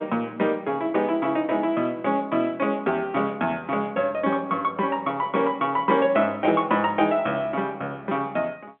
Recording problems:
telephone audio; 110 Hz to 3.6 kHz, G.711

